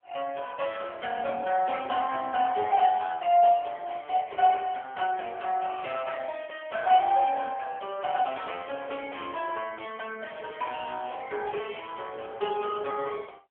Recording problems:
phone line; 260 Hz to 3.3 kHz, AMR-NB

